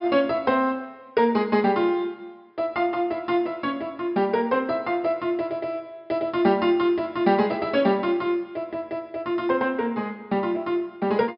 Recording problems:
treble missing; nothing above 5.5 kHz

